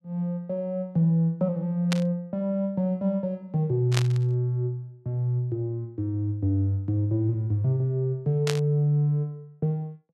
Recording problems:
burst of static; at 2 s, at 4 s and at 8.5 s; peak +2 dB vs average level

